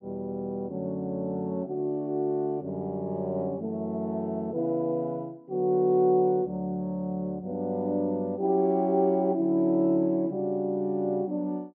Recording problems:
none

